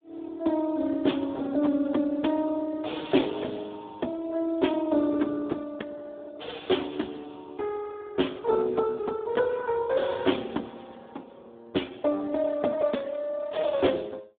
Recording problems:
phone line; 220 Hz to 3.6 kHz, Speex

